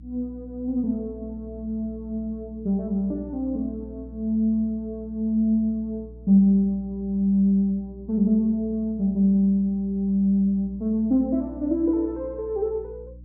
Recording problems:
hum; 60 Hz, harmonics up to 300 Hz, SNR 19 dB

